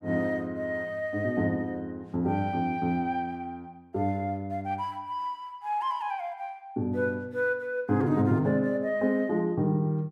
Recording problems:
none

